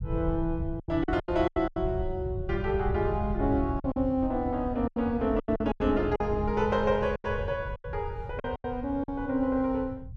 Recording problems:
low-frequency rumble; below 110 Hz, SNR 8 dB
packet loss; 11% of the sound replaced, filled with silence

